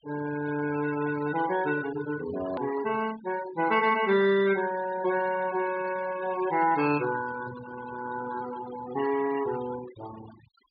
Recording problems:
low-pass filter; nothing above 4.8 kHz
noise reduction artefacts; signal-to-artefact ratio 14 dB
edit click; at 2.5 s

